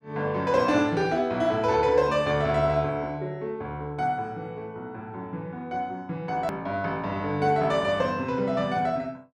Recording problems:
edit click; at 6.5 s

